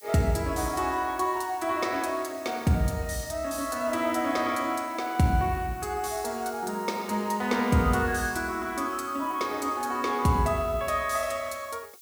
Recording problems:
hiss; SNR 21 dB

